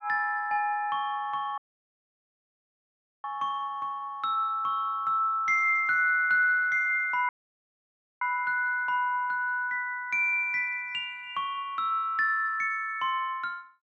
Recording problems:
audio cutting out; at 1.5 s for 1.5 s and at 7.5 s for 1 s

